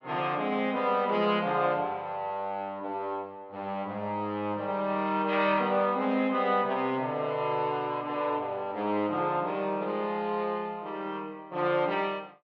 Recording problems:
none

